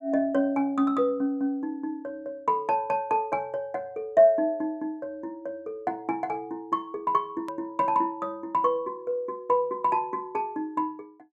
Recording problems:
click at an edit; at 7.5 s

